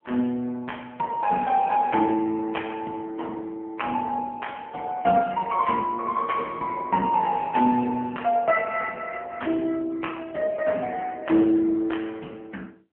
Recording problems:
telephone audio; 190 Hz to 3.1 kHz, AMR-NB

